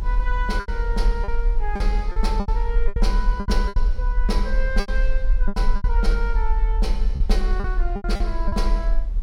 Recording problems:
low-frequency rumble; below 40 Hz, SNR -6 dB
wind noise; below 130 Hz, SNR 14 dB
packet loss; 11% of the sound replaced, filled with repeated pitch periods

